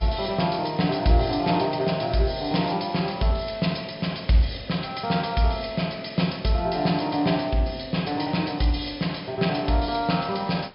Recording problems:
treble missing; nothing above 5.5 kHz
hiss; SNR 28 dB

